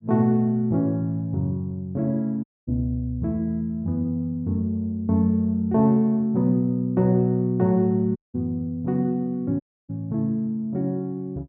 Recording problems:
audio cutting out; at 2.5 s, at 8 s and at 9.5 s

